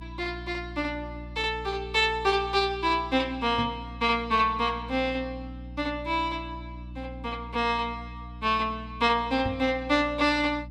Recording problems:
hum; 60 Hz, harmonics up to 300 Hz, SNR 15 dB
microphone bump; at 3.5 s and at 9.5 s; peak -2 dB vs average level

